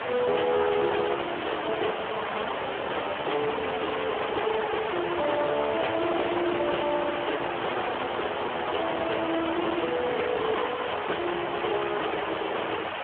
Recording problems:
phone line; 300 Hz to 3.2 kHz, Speex
distortion; hard clipping, uneven, signal-to-distortion ratio 7 dB
background hiss; SNR 3 dB

